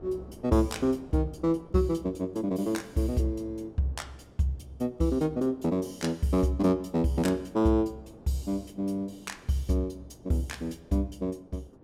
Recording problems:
wind noise; below 480 Hz, SNR 23 dB

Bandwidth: 16 kHz